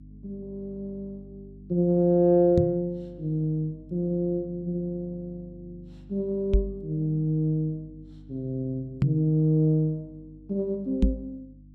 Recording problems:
hum; 50 Hz, harmonics up to 300 Hz, SNR 22 dB
microphone thump; 4 times, first at 2.5 s; peak +7 dB vs average level

